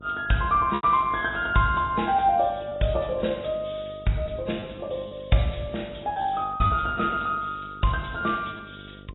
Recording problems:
lossy codec; AAC, log-spectral distance 5 dB, nothing above 3.8 kHz
electrical hum; 50 Hz, harmonics up to 1.1 kHz, SNR 21 dB
packet loss; 3% of the sound replaced, filled with repeated pitch periods

